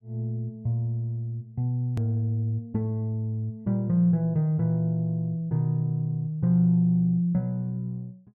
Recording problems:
hard cut with a click; at 2 s

